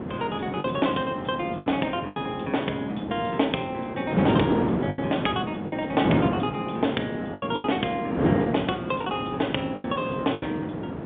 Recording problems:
telephone audio; 150 Hz to 3.6 kHz, G.711
wind on the microphone; below 490 Hz, SNR 1 dB
packet loss; 6% of the sound replaced, filled with the last packet

